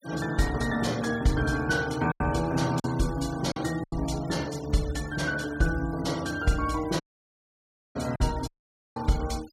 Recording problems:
noise reduction artefacts; signal-to-artefact ratio 17 dB
lost packets; 4% of the sound replaced, filled with silence
audio cutting out; at 7 s for 1 s and at 8.5 s

